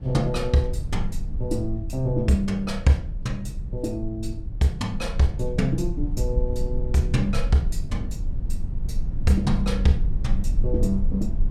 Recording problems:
rumble; below 60 Hz, SNR 5 dB

